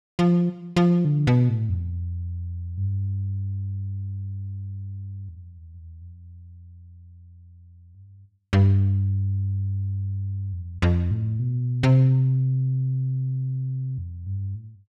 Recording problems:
none

